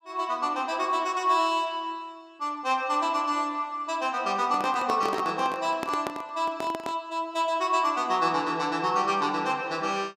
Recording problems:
handling noise; from 4.5 to 7 s; peak -1 dB vs average level

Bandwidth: 15 kHz